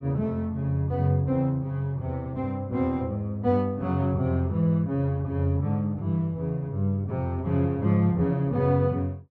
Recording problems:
none

